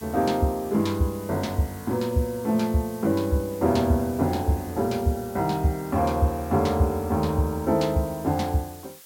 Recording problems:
background hiss; slope +1 dB per octave, SNR 20 dB

